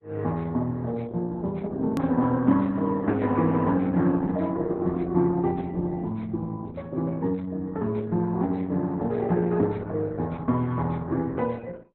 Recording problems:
codec artefacts; Opus, log-spectral distance 2 dB, nothing above 13.7 kHz
click at an edit; at 2 s

